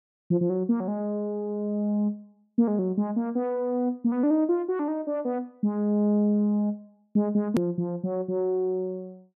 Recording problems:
edit click; at 7.5 s

